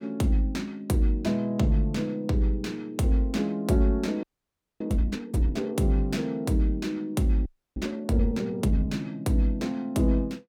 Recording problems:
frozen audio; at 4 s for 0.5 s and at 7.5 s

